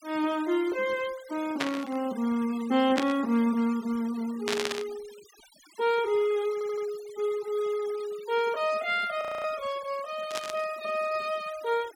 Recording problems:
noise reduction artefacts; signal-to-artefact ratio 20 dB
burst of static; 4 times, first at 1.5 s; peak +4 dB vs average level
stutter; at 6.5 s
frozen audio; at 9 s

